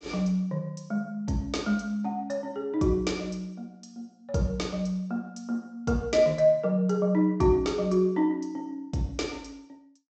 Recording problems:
low-pass filter; nothing above 8 kHz

